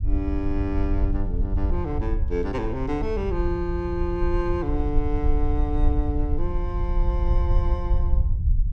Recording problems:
low-frequency rumble; below 66 Hz, SNR -2 dB

